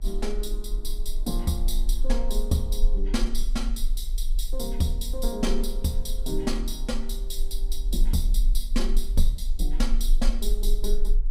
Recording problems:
hum; 60 Hz, harmonics up to 1 kHz, SNR 22 dB
rumble; below 34 Hz, strongest tone 22 Hz, SNR -2 dB

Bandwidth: 15.5 kHz